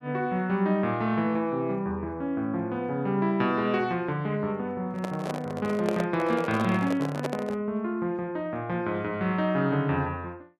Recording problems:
handling noise; from 5 to 7.5 s; peak +1 dB vs average level

